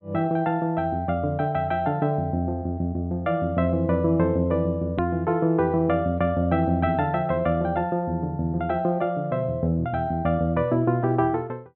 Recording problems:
low-pass filter; nothing above 4 kHz
edit click; at 5 s

